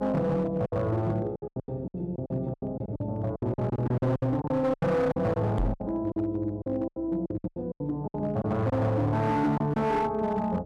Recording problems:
distortion; hard clipping, signal-to-distortion ratio 10 dB
hum; 60 Hz, harmonics up to 600 Hz, SNR 20 dB
lost packets; 15% of the sound replaced, filled with silence
microphone bump; at 5.5 s; peak +3 dB vs average level

